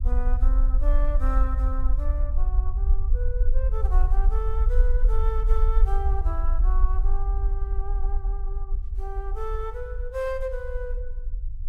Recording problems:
low-frequency rumble; below 46 Hz, strongest tone 24 Hz, SNR -9 dB

